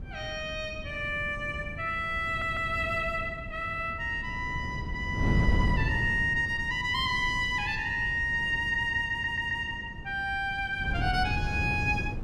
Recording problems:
wind on the microphone; below 180 Hz, SNR 7 dB
audio stuttering; at 2.5 s and at 9 s

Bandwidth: 14.5 kHz